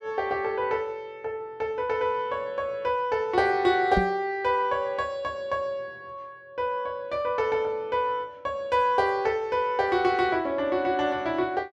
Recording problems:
microphone bump; at 4 s; peak +3 dB vs average level

